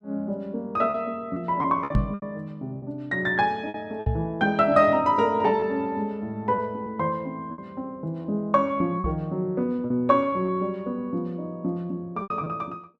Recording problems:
lost packets; 6% of the sound replaced, filled with repeated pitch periods
microphone bump; at 2 s, at 4 s and at 9 s; peak +7 dB vs average level

